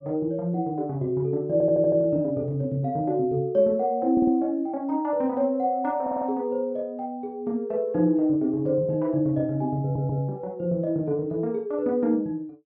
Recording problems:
audio stuttering; 4 times, first at 1.5 s

